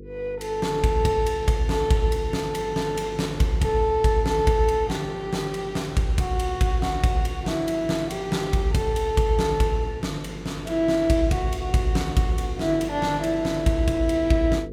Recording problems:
hum; 50 Hz, harmonics up to 500 Hz, SNR 15 dB

